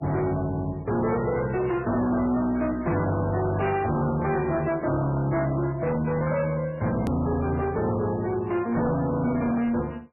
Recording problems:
lossy codec; MP3, log-spectral distance 3 dB, nothing above 13.1 kHz
distortion; hard clipping, signal-to-distortion ratio 8 dB
hard cut with a click; at 7 s

